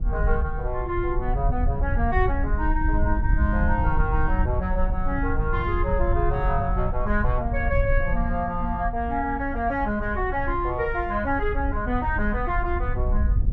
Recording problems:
wind noise; below 70 Hz, SNR 1 dB

